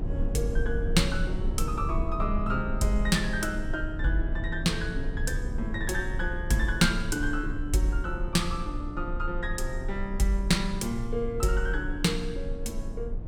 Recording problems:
low-frequency rumble; below 68 Hz, strongest tone 30 Hz, SNR 5 dB

